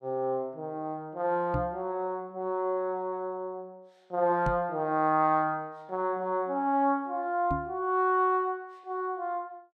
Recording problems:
microphone bump; at 1.5 s, at 4.5 s and at 7.5 s; peak +1 dB vs average level

